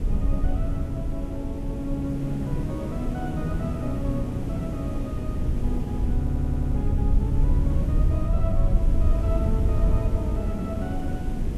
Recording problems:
background hiss; SNR 2 dB
rumble; below 80 Hz, SNR -5 dB
audio stuttering; at 6 s

